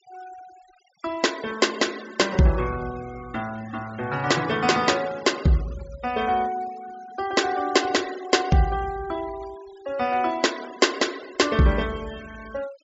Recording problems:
treble missing; nothing above 8 kHz
denoising artefacts; signal-to-artefact ratio 19 dB

